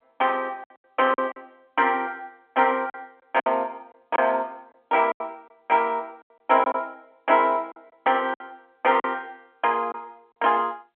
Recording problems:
telephone audio; 220 Hz to 3.3 kHz, G.711
lost packets; 8% of the sound replaced, filled with silence

